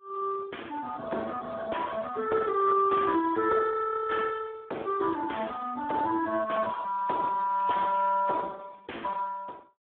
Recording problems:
telephone audio; 260 Hz to 3.4 kHz, Speex

